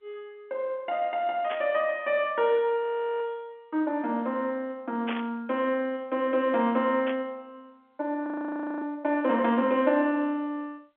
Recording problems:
phone line; 190 Hz to 3.5 kHz, G.711
burst of static; at 1.5 s, at 5 s and at 7 s; peak -4 dB vs average level
frozen audio; at 3 s and at 8.5 s for 0.5 s

